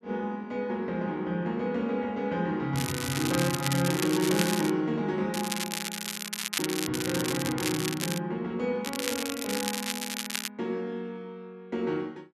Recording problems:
crackle; from 3 to 4.5 s, from 5.5 to 8 s and from 9 to 10 s; loose cable, SNR 3 dB

